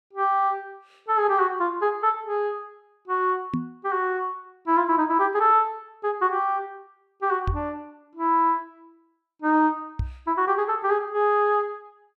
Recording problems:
knock on the microphone; at 3.5 s, at 7.5 s and at 10 s; peak +1 dB vs average level

